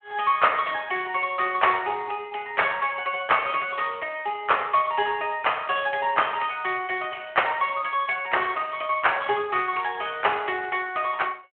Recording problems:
telephone audio; 320 Hz to 3.3 kHz, Speex

